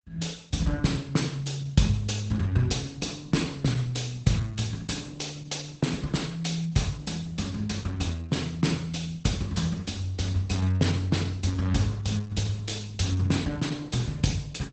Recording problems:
lossy compression; Opus, log-spectral distance 4 dB, nothing above 8 kHz

